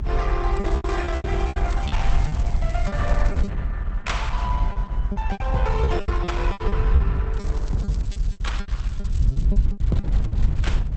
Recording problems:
lossy compression; Opus, log-spectral distance 3 dB, nothing above 8.2 kHz
rumble; below 68 Hz, SNR -4 dB
packet loss; 15% of the sound replaced, filled with repeated pitch periods
crackle; from 0.5 to 3.5 s and from 7.5 to 9.5 s; loose cable, SNR 19 dB

